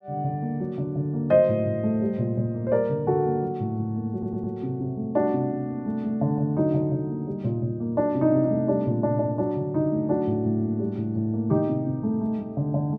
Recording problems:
stutter; at 4 s

